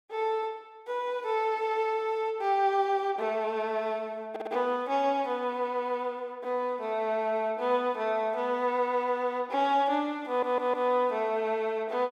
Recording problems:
audio stuttering; at 4.5 s and at 10 s

